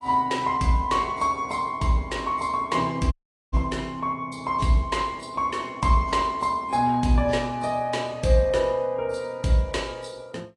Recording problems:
codec artefacts; AAC, log-spectral distance 2 dB, nothing above 10.1 kHz
dropout; at 3 s

